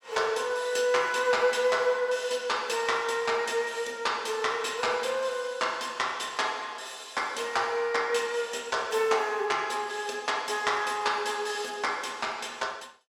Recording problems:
none

